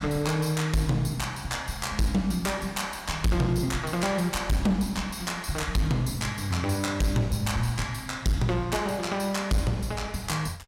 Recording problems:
distorted audio; hard clipping, uneven, signal-to-distortion ratio 10 dB

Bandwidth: 16 kHz